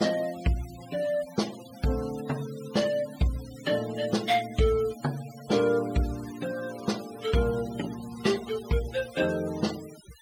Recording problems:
noise reduction artefacts; signal-to-artefact ratio 15 dB

